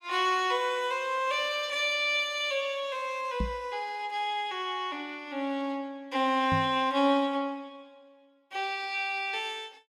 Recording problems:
microphone bump; at 3.5 s and at 6.5 s; peak 0 dB vs average level

